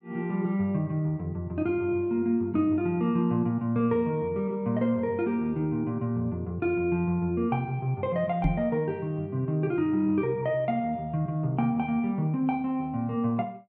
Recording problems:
knock on the microphone; at 8.5 s; peak +4 dB vs average level

